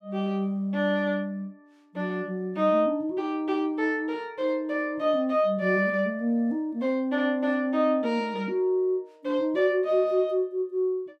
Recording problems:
none

